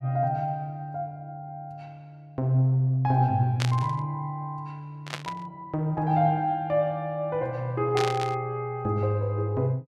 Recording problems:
burst of static; at 3.5 s, at 5 s and at 8 s; peak 0 dB vs average level

